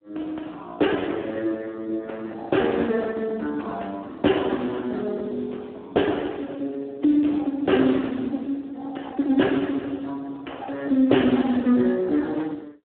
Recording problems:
telephone audio; 260 Hz to 3.4 kHz, Speex

